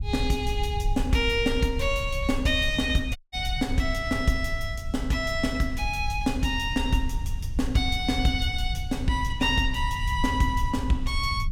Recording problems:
rumble; below 80 Hz, SNR 6 dB
audio cutting out; at 3 s

